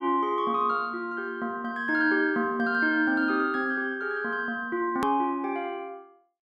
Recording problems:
edit click; at 5 s

